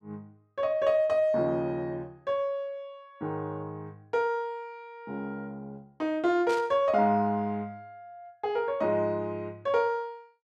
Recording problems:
burst of static; at 6.5 s; peak -9 dB vs average level

